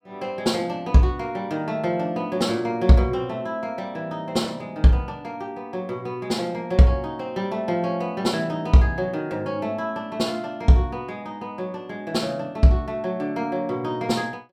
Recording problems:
none

